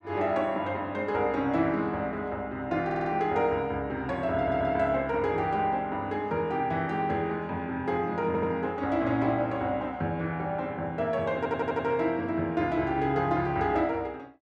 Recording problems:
stutter; 4 times, first at 3 s

